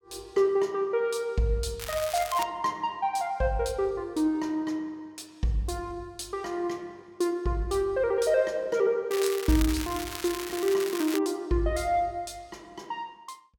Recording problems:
crackle; at 2 s and from 9 to 11 s; loose cable, SNR 9 dB

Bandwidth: 17 kHz